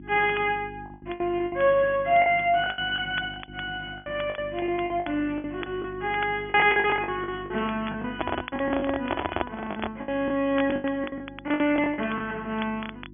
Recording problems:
low-pass filter; nothing above 3.4 kHz
hum; 50 Hz, harmonics up to 350 Hz, SNR 18 dB
crackle; vinyl, SNR 18 dB
lost packets; 15% of the sound replaced, filled with the last packet
handling noise; from 8 to 10 s; peak +3 dB vs average level

